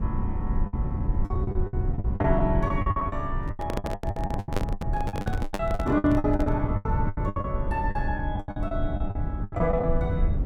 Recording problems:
rumble; below 120 Hz, SNR 0 dB
lost packets; 21% of the sound replaced, filled with the last packet
handling noise; from 3.5 to 6.5 s; peak +5 dB vs average level

